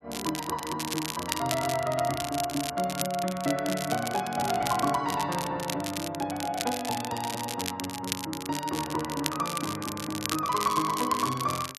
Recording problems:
crackling; vinyl, SNR 6 dB

